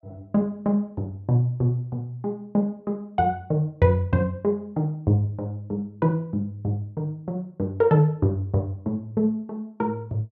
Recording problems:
none

